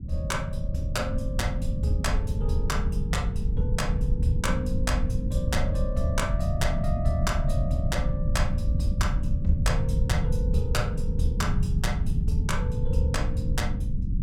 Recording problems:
low-frequency rumble; below 110 Hz, SNR -3 dB

